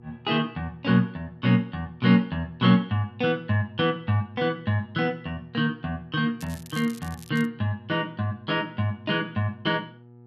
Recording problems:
hum; 60 Hz, harmonics up to 840 Hz, SNR 24 dB
crackle; from 6.5 to 7.5 s; loose cable, SNR 20 dB

